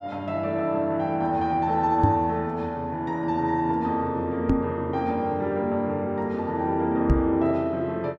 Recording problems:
knock on the microphone; at 2 s, at 4.5 s and at 7 s; peak +7 dB vs average level

